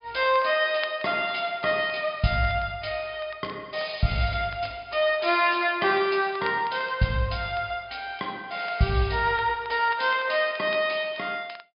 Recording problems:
treble missing; nothing above 5.2 kHz
crackle; vinyl, SNR 23 dB

